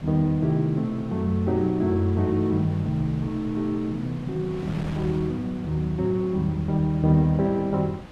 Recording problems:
wind noise; below 660 Hz, SNR 16 dB

